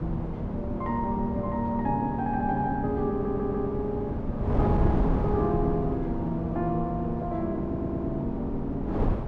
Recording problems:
wind noise; below 310 Hz, SNR 2 dB
stutter; at 3 s and at 7.5 s

